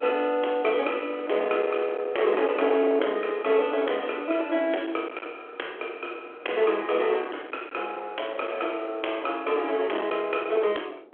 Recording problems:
phone line; 300 Hz to 3.3 kHz, G.726
distorted audio; hard clipping, signal-to-distortion ratio 17 dB
wind on the microphone; below 1.1 kHz, SNR 13 dB

